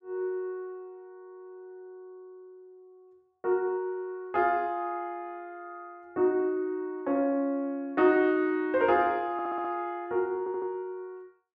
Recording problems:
audio stuttering; at 9.5 s and at 10 s

